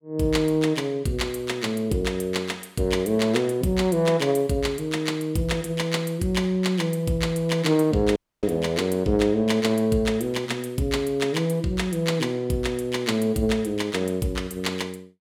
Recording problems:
dropout; at 8 s

